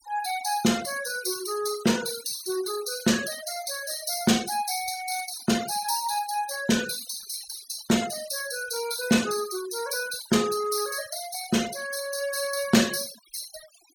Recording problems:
denoising artefacts; signal-to-artefact ratio 12 dB

